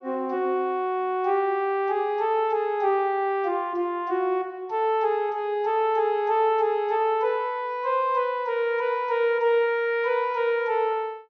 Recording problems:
low-pass filter; nothing above 6.3 kHz

